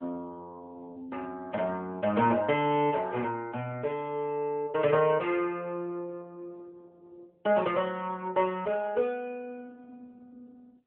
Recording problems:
telephone audio; 240 Hz to 3.3 kHz, AMR-NB

